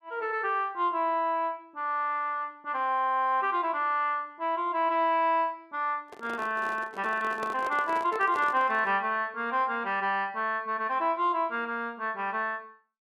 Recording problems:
microphone handling noise; from 6 to 9 s; peak -6 dB vs average level

